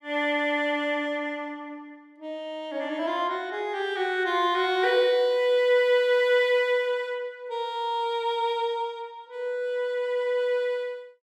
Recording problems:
none

